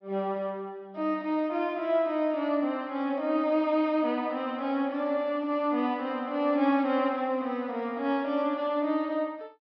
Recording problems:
treble cut off; nothing above 5.5 kHz

